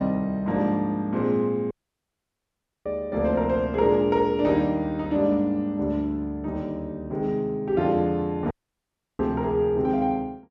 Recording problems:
audio cutting out; at 1.5 s for 1 s and at 8.5 s for 0.5 s

